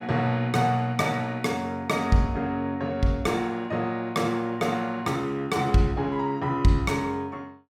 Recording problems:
none

